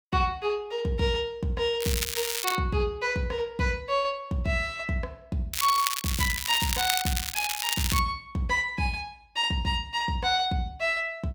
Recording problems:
crackle; at 2 s and from 5.5 to 8 s; loose cable, SNR 2 dB

